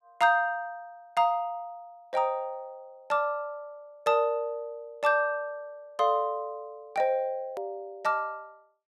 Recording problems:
click at an edit; at 7.5 s

